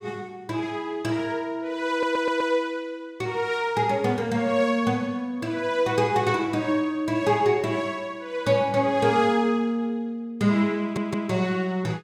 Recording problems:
audio stuttering; at 2 s and at 11 s

